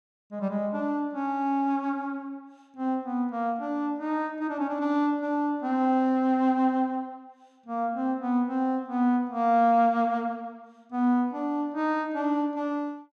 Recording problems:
none

